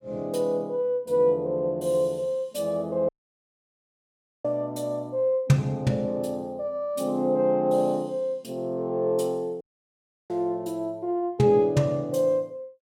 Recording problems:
audio cutting out; at 3 s for 1.5 s and at 9.5 s for 0.5 s

